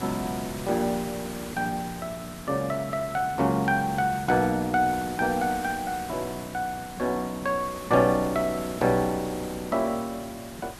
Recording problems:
background hiss; slope -3 dB per octave, SNR 13 dB

